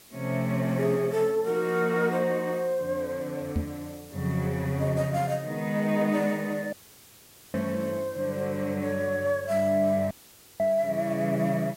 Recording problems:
background hiss; slope -1 dB per octave, SNR 22 dB
microphone thump; at 3.5 s; peak +2 dB vs average level
audio cutting out; at 6.5 s for 1 s and at 10 s

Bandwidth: 16 kHz